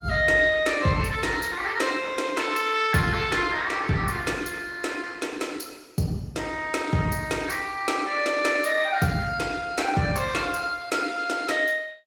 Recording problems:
lossy codec; Opus, log-spectral distance 4 dB, nothing above 17.4 kHz

